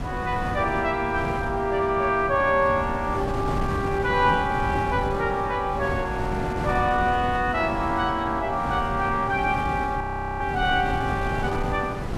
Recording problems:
wind noise; below 380 Hz, SNR 7 dB
frozen audio; at 10 s

